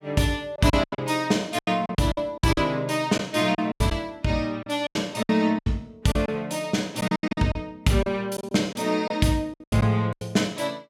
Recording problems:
lost packets; 13% of the sound replaced, filled with silence

